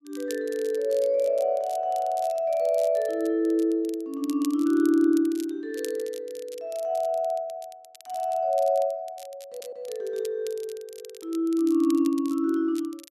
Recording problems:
crackling; vinyl, SNR 21 dB
audio stuttering; at 9.5 s

